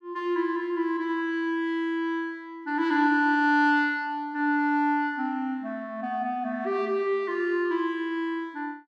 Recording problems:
none

